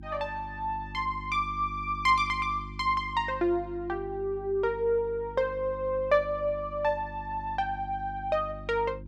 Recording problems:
mains hum; 50 Hz, harmonics up to 350 Hz, SNR 15 dB

